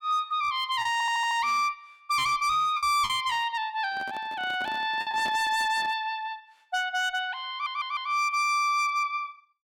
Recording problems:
distorted audio; hard clipping, signal-to-distortion ratio 12 dB
packet loss; 3% of the sound replaced, filled with the last packet
stutter; at 1 s and at 7.5 s
handling noise; from 4 to 6 s; peak -10 dB vs average level

